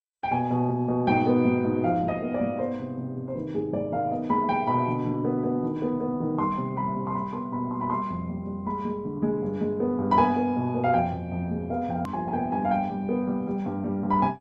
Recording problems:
lossy codec; Opus, then MP2, log-spectral distance 2 dB, nothing above 13.1 kHz
click at an edit; at 12 s

